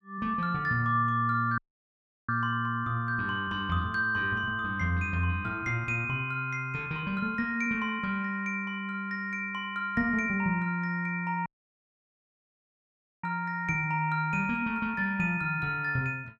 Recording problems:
audio cutting out; at 1.5 s for 0.5 s and at 11 s for 2 s

